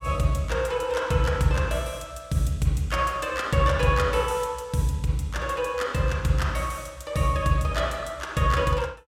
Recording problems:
none

